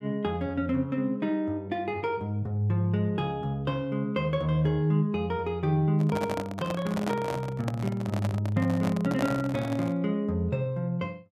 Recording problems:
microphone handling noise; from 6 to 10 s; peak +1 dB vs average level

